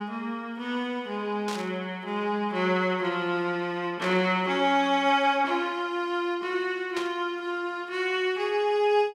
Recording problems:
static burst; at 1.5 s, at 4 s and at 7 s; peak -5 dB vs average level

